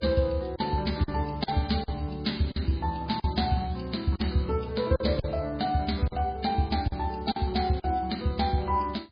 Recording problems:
lossy compression; MP3, log-spectral distance 5 dB, nothing above 4.6 kHz
lost packets; 6% of the sound replaced, filled with silence

